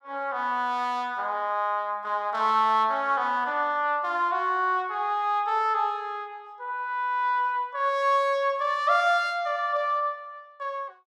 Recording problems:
none

